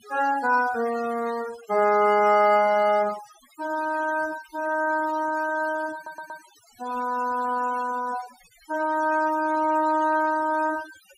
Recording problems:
noise reduction artefacts; signal-to-artefact ratio 20 dB
audio stuttering; at 6 s

